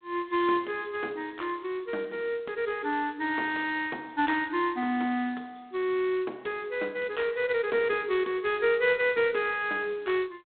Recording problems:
telephone audio; 220 Hz to 3.9 kHz, G.726

